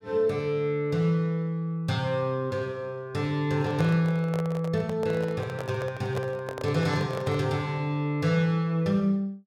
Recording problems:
handling noise; from 3.5 to 7.5 s; peak -3 dB vs average level

